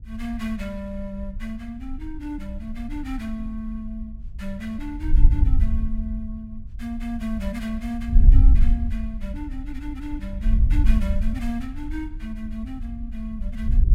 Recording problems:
wind noise; below 56 Hz, SNR -8 dB

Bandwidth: 16 kHz